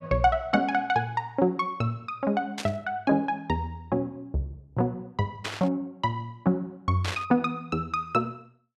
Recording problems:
burst of static; at 2.5 s, at 5.5 s and at 7 s; peak 0 dB vs average level

